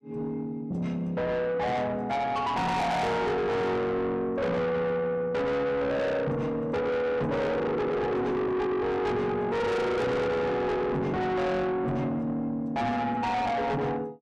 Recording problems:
distorted audio; soft clipping, signal-to-distortion ratio 6 dB

